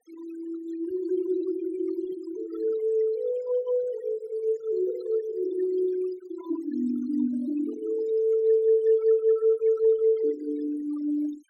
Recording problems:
denoising artefacts; signal-to-artefact ratio 20 dB

